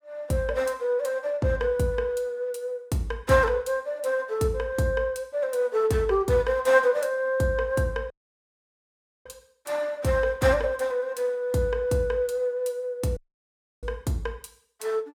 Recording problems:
dropout; at 8 s for 1 s and at 13 s for 0.5 s

